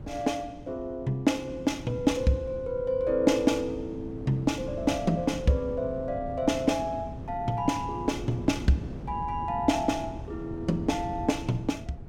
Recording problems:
wind on the microphone; below 230 Hz, SNR 12 dB

